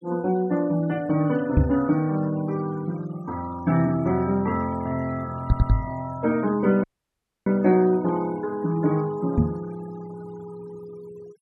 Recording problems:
noise reduction artefacts; signal-to-artefact ratio 23 dB
microphone thump; at 1.5 s, at 5.5 s and at 9.5 s; peak +9 dB vs average level
stutter; at 5.5 s
dropout; at 7 s for 0.5 s

